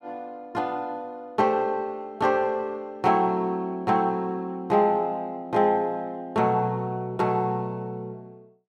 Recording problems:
none

